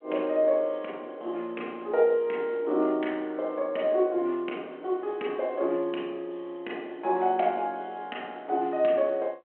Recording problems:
telephone audio; 260 Hz to 3.1 kHz, G.726

